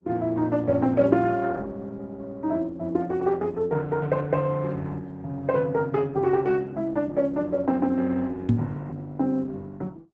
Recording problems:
lossy codec; Opus, log-spectral distance 2 dB
microphone bump; at 8.5 s; peak +9 dB vs average level

